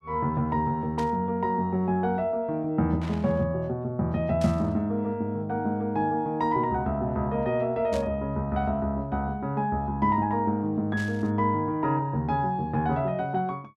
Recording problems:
burst of static; 5 times, first at 1 s; peak -10 dB vs average level

